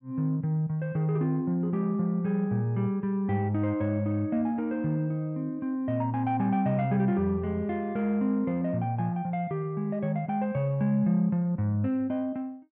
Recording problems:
none

